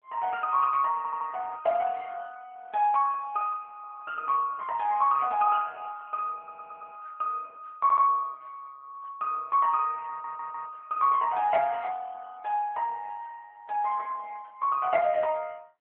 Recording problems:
telephone audio; 300 Hz to 2.8 kHz, AMR-NB
stutter; 4 times, first at 1 s

